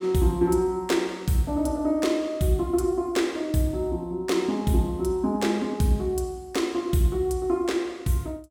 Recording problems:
none

